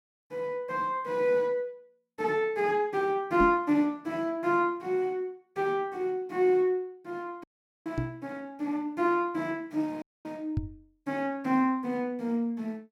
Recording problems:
microphone thump; at 3.5 s, at 8 s and at 11 s; peak +3 dB vs average level
dropout; at 7.5 s and at 10 s

